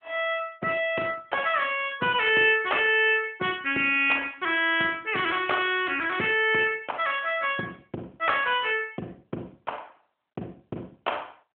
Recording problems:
telephone audio; 220 Hz to 3.4 kHz, AMR-NB

